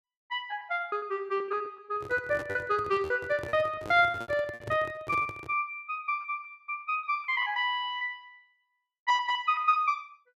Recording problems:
lost packets; 14% of the sound replaced, filled with repeated pitch periods
handling noise; from 2 to 5.5 s; peak -5 dB vs average level

